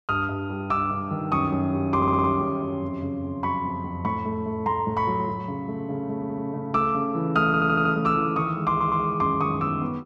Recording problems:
stutter; 4 times, first at 2 s

